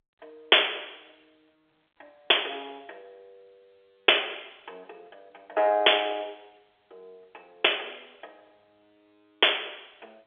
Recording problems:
telephone audio; 340 Hz to 3.5 kHz, G.711

